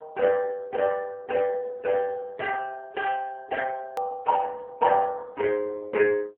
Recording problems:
telephone audio; 280 Hz to 2 kHz, AMR-NB
click at an edit; at 4 s

